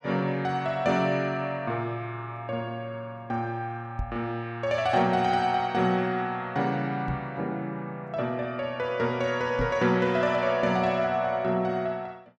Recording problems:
microphone bump; at 4 s, at 7 s and at 9.5 s; peak -1 dB vs average level

